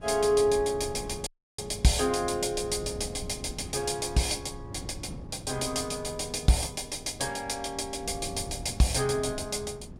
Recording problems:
wind on the microphone; below 200 Hz, SNR 14 dB
audio cutting out; at 1.5 s

